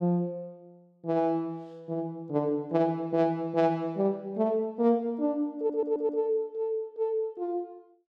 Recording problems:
audio stuttering; at 5.5 s

